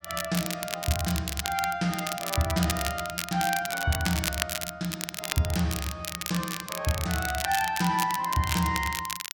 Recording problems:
crackling; vinyl, SNR 4 dB

